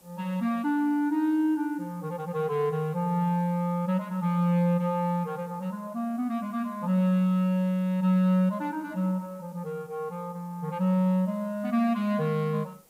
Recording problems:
hiss; SNR 30 dB

